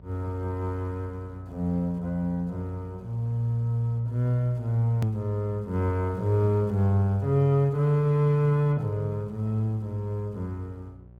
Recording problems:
mains hum; 60 Hz, harmonics up to 780 Hz, SNR 23 dB
click at an edit; at 5 s

